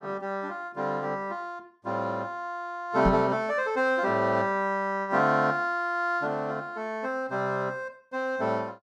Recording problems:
knock on the microphone; at 3 s; peak +5 dB vs average level

